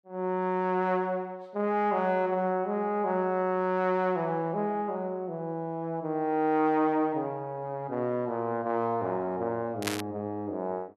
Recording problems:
crackle; at 10 s; loose cable, SNR 8 dB

